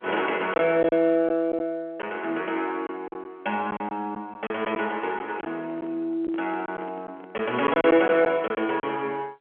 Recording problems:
phone line; 240 Hz to 3.3 kHz, G.711
packet loss; 6% of the sound replaced, filled with silence
microphone handling noise; from 5 to 8 s; peak -12 dB vs average level

